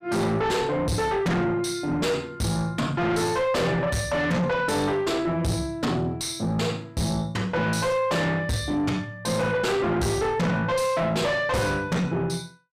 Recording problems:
distortion; soft clipping, signal-to-distortion ratio 5 dB

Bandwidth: 15.5 kHz